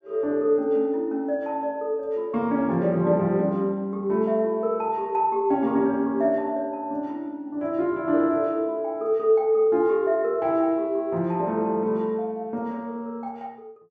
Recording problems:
none

